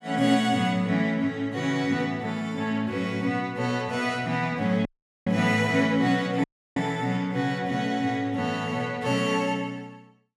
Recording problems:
audio cutting out; at 5 s and at 6.5 s

